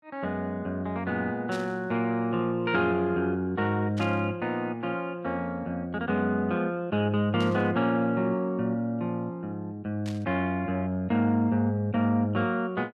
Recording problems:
burst of static; 4 times, first at 1.5 s; peak -10 dB vs average level

